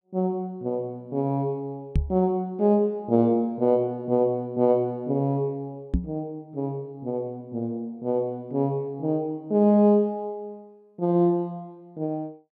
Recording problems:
microphone bump; at 2 s and at 6 s; peak +5 dB vs average level

